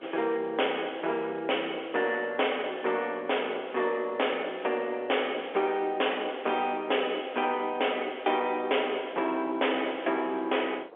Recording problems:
phone line; 320 Hz to 3.5 kHz, G.711
distortion; soft clipping, signal-to-distortion ratio 13 dB
wind on the microphone; below 800 Hz, SNR 21 dB

